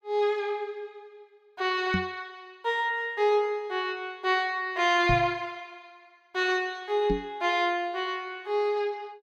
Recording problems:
knock on the microphone; at 2 s, at 5 s and at 7 s; peak +2 dB vs average level

